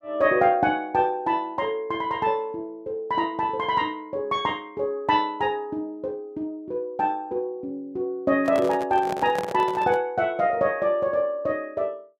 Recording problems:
handling noise; from 8.5 to 10 s; peak -2 dB vs average level

